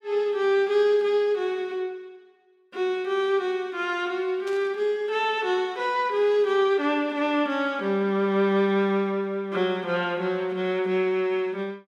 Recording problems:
burst of static; at 4.5 s; peak -14 dB vs average level

